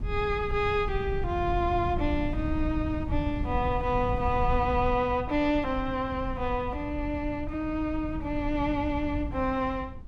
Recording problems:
wind on the microphone; below 110 Hz, SNR 6 dB

